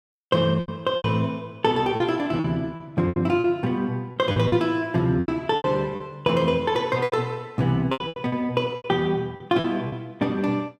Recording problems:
lost packets; 12% of the sound replaced, filled with repeated pitch periods

